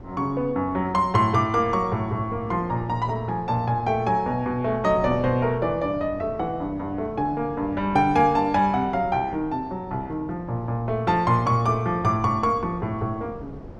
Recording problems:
wind noise; below 420 Hz, SNR 17 dB

